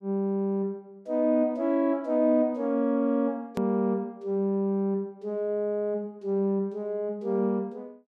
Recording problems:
hard cut with a click; at 3.5 s

